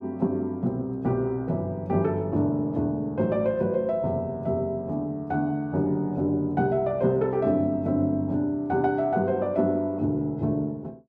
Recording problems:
none

